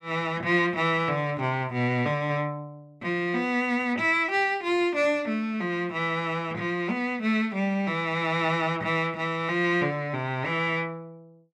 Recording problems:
none

